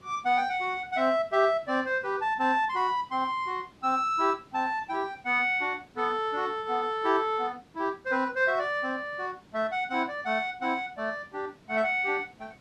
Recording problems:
background hiss; slope -5 dB per octave, SNR 29 dB

